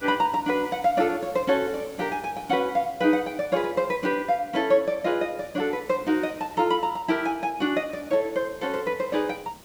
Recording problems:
hiss; SNR 22 dB

